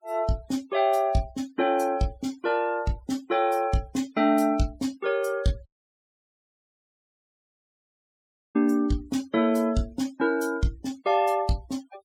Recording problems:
noise reduction artefacts; signal-to-artefact ratio 23 dB
dropout; at 5.5 s for 3 s

